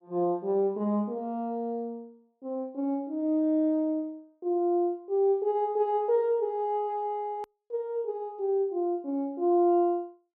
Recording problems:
edit click; at 7.5 s

